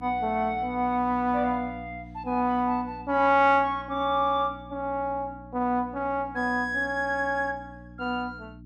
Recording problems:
mains hum; 60 Hz, harmonics up to 300 Hz, SNR 19 dB

